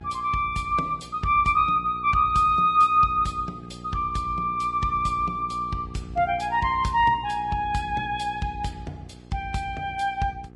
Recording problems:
codec artefacts; Vorbis, log-spectral distance 2 dB, nothing above 10.7 kHz
hum; 60 Hz, harmonics up to 1.3 kHz, SNR 19 dB

